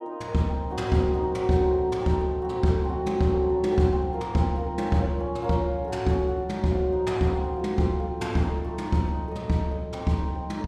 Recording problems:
none

